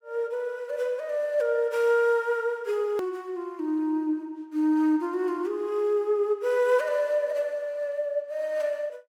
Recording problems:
edit click; at 3 s

